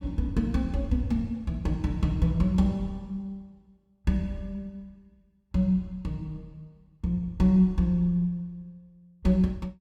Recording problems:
none

